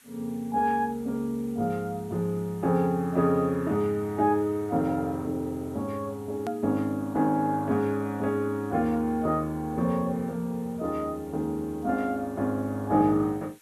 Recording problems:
background hiss; SNR 27 dB
edit click; at 6.5 s

